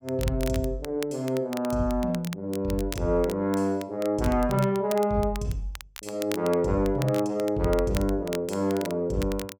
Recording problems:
crackle; vinyl, SNR 15 dB

